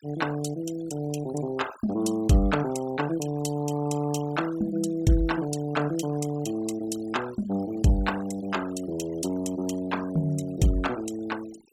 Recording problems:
denoising artefacts; signal-to-artefact ratio 17 dB

